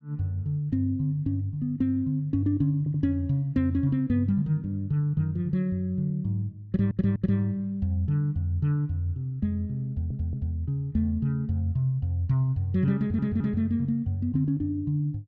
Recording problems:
stutter; 4 times, first at 3 s

